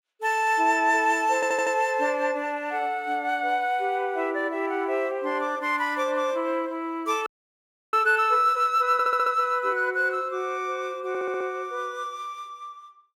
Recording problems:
stutter; at 1.5 s, at 9 s and at 11 s
audio freezing; at 7.5 s for 0.5 s

